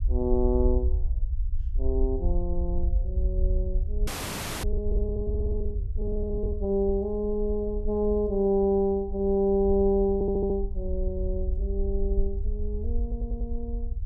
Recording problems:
low-frequency rumble; below 60 Hz, SNR 3 dB
frozen audio; at 4 s for 0.5 s
audio stuttering; at 5.5 s, at 10 s and at 13 s

